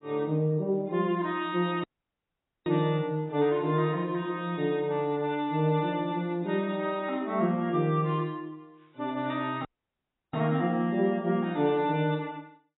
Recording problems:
lossy compression; AAC, log-spectral distance 2 dB, nothing above 3.6 kHz
dropout; at 2 s for 1 s and at 9.5 s for 0.5 s

